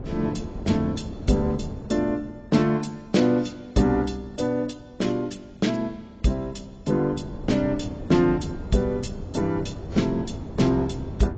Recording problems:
lossy compression; AAC, log-spectral distance 2 dB, nothing above 7.6 kHz
wind noise; below 280 Hz, SNR 11 dB

